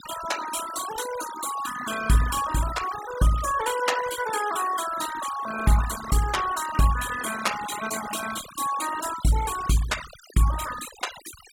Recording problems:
noise reduction artefacts; signal-to-artefact ratio 10 dB

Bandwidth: 18 kHz